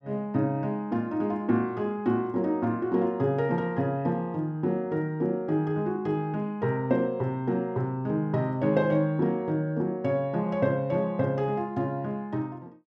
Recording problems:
none

